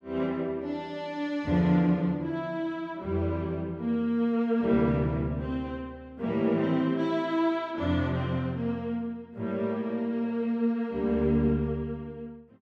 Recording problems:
none

